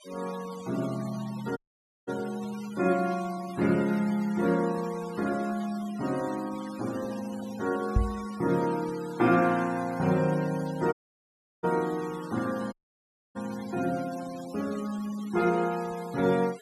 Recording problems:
noise reduction artefacts; signal-to-artefact ratio 17 dB
dropout; at 1.5 s, at 11 s for 0.5 s and at 13 s for 0.5 s
microphone thump; at 8 s; peak +8 dB vs average level

